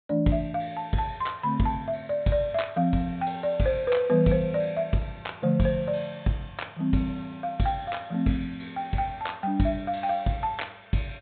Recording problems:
treble cut off; nothing above 4 kHz

